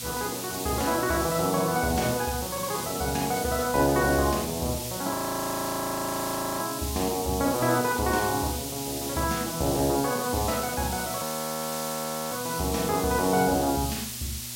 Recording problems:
hum; 60 Hz, harmonics up to 720 Hz, SNR 19 dB
background hiss; slope +4 dB per octave, SNR 6 dB
audio freezing; at 5 s for 1.5 s and at 11 s for 1 s

